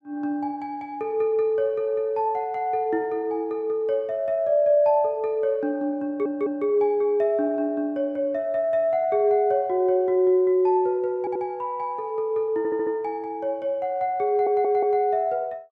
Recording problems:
audio stuttering; 4 times, first at 6 s

